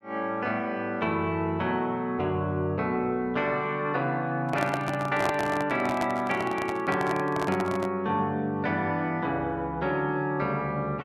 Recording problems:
microphone handling noise; from 4.5 to 8 s; peak +1 dB vs average level

